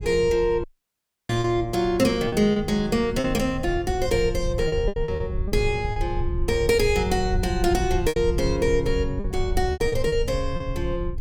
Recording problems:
rumble; below 84 Hz, SNR 7 dB
packet loss; 7% of the sound replaced, filled with repeated pitch periods
audio cutting out; at 0.5 s for 0.5 s

